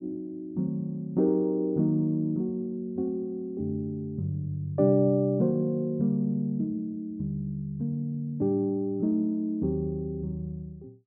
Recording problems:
none

